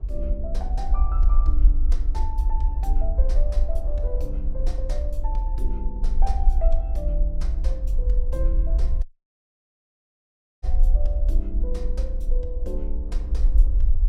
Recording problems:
low-frequency rumble; below 48 Hz, SNR -11 dB
wind noise; below 380 Hz, SNR 14 dB
audio cutting out; at 9 s for 1.5 s

